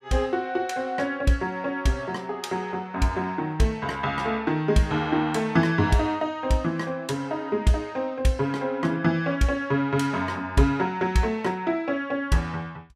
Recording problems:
none

